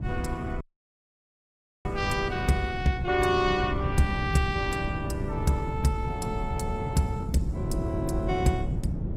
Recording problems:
codec artefacts; Opus, log-spectral distance 2 dB, nothing above 18.3 kHz
wind noise; below 170 Hz, SNR 4 dB
audio cutting out; at 0.5 s for 1 s

